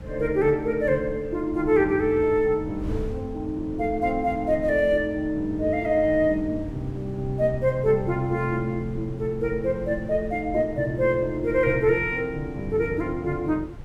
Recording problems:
wind on the microphone; below 120 Hz, SNR 15 dB

